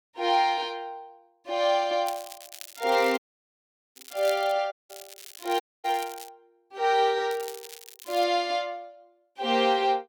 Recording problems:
crackling; from 2 to 4.5 s, from 5 to 6.5 s and at 7.5 s; loose cable, SNR 17 dB
audio cutting out; at 3 s for 1 s, at 4.5 s and at 5.5 s

